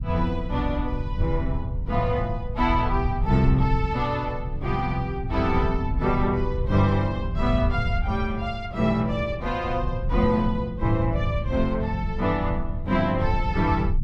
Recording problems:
low-frequency rumble; below 98 Hz, SNR 5 dB

